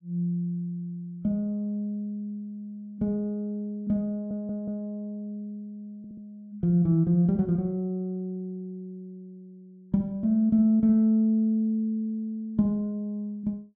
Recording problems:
audio stuttering; at 4 s and at 6 s

